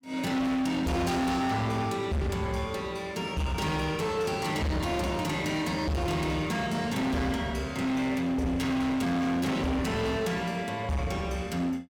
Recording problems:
distorted audio; hard clipping, signal-to-distortion ratio 7 dB

